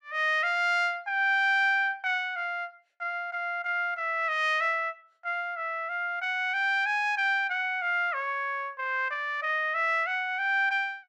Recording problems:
none

